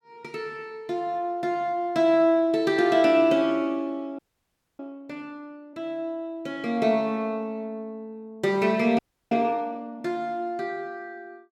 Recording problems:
frozen audio; at 4 s for 0.5 s and at 9 s

